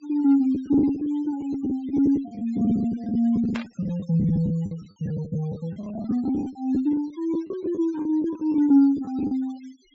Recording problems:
treble missing; nothing above 8 kHz
noise reduction artefacts; signal-to-artefact ratio 28 dB
packet loss; 13% of the sound replaced, filled with the last packet
burst of static; at 3.5 s; peak -6 dB vs average level

